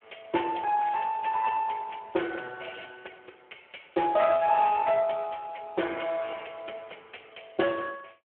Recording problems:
telephone audio; 280 Hz to 3.1 kHz, Speex

